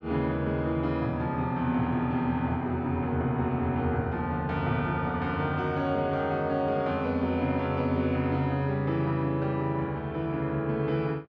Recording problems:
none

